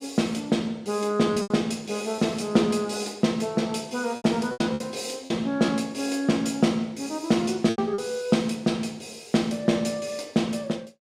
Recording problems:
packet loss; 5% of the sound replaced, filled with repeated pitch periods

